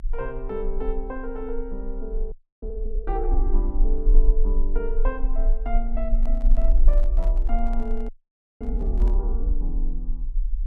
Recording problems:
low-frequency rumble; below 38 Hz, strongest tone 24 Hz, SNR -8 dB
audio freezing; at 2.5 s and at 8 s for 0.5 s
microphone handling noise; from 6 to 9 s; peak -6 dB vs average level

